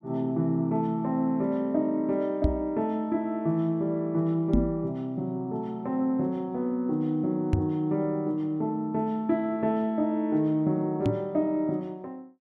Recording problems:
knock on the microphone; 4 times, first at 2.5 s; peak +8 dB vs average level

